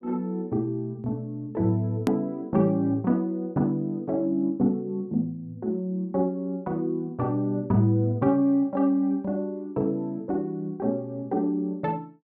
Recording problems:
edit click; at 2 s

